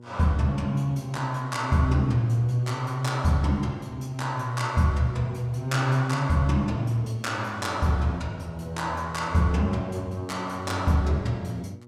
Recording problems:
mains hum; 60 Hz, harmonics up to 960 Hz, SNR 21 dB

